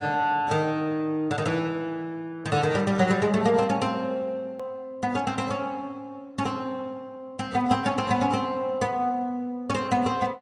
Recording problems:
lossy compression; AAC, log-spectral distance 2 dB
hard cut with a click; at 4.5 s

